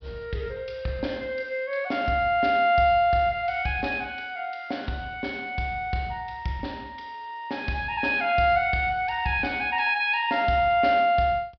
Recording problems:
low-pass filter; nothing above 5.5 kHz

